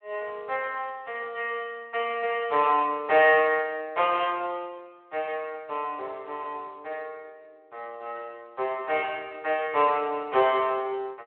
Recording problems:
phone line; 320 Hz to 3.2 kHz, Speex

